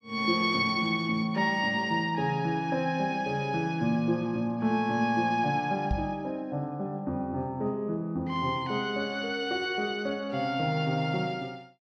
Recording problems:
knock on the microphone; at 6 s; peak +1 dB vs average level

